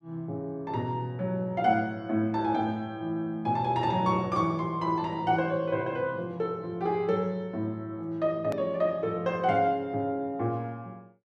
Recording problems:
edit click; at 8.5 s

